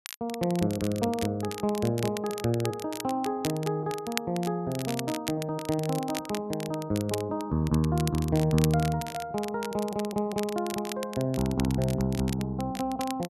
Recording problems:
crackle; vinyl, SNR 11 dB

